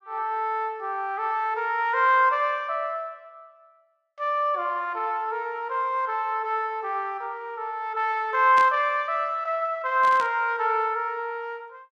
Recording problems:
static burst; at 8.5 s and at 10 s; peak -7 dB vs average level

